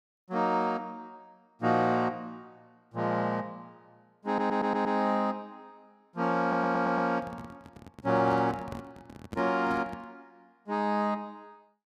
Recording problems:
audio stuttering; at 4.5 s and at 6.5 s
microphone handling noise; from 7 to 10 s; peak -6 dB vs average level

